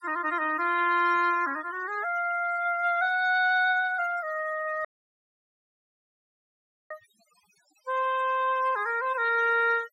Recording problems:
denoising artefacts; signal-to-artefact ratio 19 dB
dropout; at 5 s for 2 s

